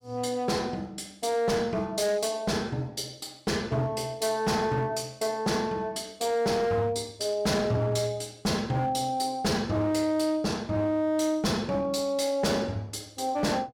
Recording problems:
distorted audio; hard clipping, signal-to-distortion ratio 11 dB

